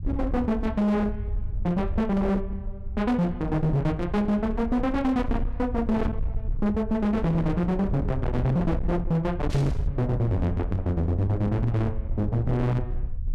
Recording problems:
distortion; hard clipping, signal-to-distortion ratio 7 dB
rumble; below 90 Hz, SNR 7 dB
static burst; at 9.5 s; peak -10 dB vs average level

